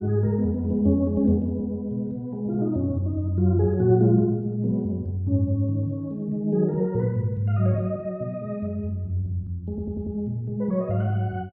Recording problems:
stutter; at 9.5 s

